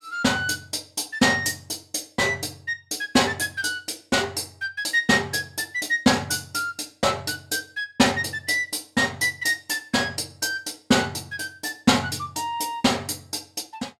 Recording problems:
none

